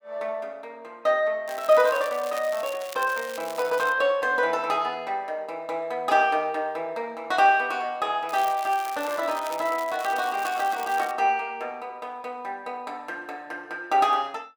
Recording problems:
crackle; from 1.5 to 4 s and from 8.5 to 11 s; loose cable, SNR 16 dB

